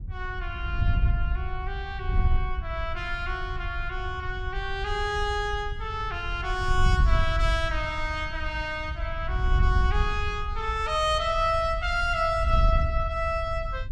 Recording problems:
wind on the microphone; below 74 Hz, SNR 2 dB

